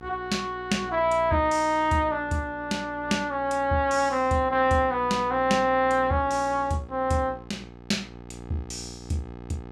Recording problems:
hum; 60 Hz, harmonics up to 1.7 kHz, SNR 18 dB

